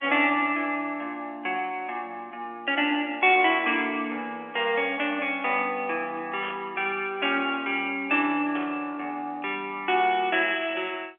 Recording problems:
phone line; 300 Hz to 3.4 kHz, G.711
burst of static; at 6.5 s and at 8.5 s; peak -9 dB vs average level

